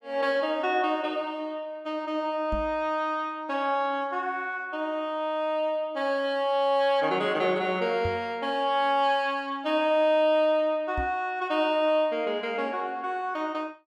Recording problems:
microphone thump; at 2.5 s, at 8 s and at 11 s; peak -3 dB vs average level

